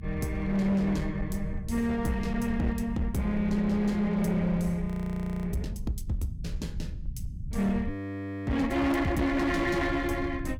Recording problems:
distorted audio; hard clipping, uneven, signal-to-distortion ratio 10 dB
low-frequency rumble; below 110 Hz, SNR 9 dB
audio freezing; at 5 s for 0.5 s and at 8 s for 0.5 s

